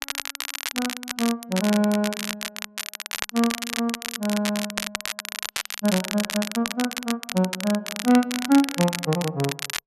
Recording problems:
crackle; vinyl, SNR 5 dB

